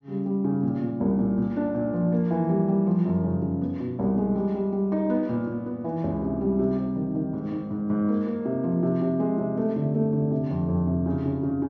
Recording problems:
treble cut off; nothing above 6.9 kHz

